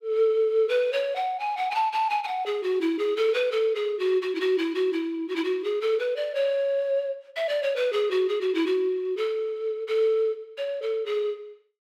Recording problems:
none

